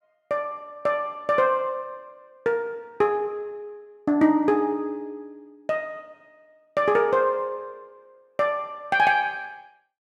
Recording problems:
none

